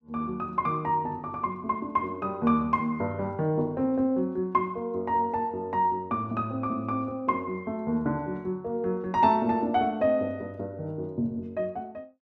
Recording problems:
none

